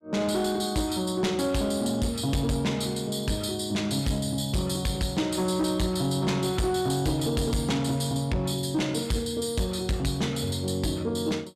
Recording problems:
distorted audio; soft clipping, signal-to-distortion ratio 11 dB

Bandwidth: 14 kHz